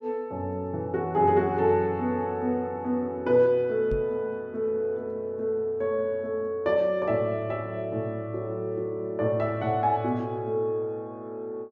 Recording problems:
microphone bump; at 4 s; peak -3 dB vs average level

